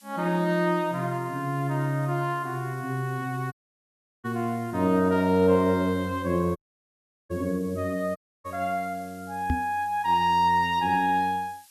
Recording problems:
background hiss; slope +4 dB per octave, SNR 26 dB
dropout; at 3.5 s for 0.5 s, at 6.5 s for 0.5 s and at 8 s
knock on the microphone; at 9.5 s; peak +3 dB vs average level

